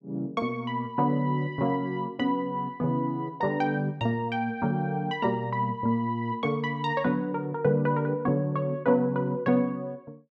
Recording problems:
none

